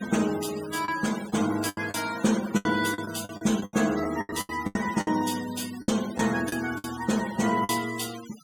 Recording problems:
denoising artefacts; signal-to-artefact ratio 13 dB
packet loss; 12% of the sound replaced, filled with the last packet

